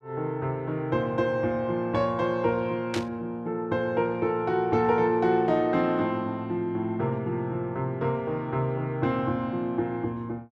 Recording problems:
static burst; at 3 s; peak -2 dB vs average level

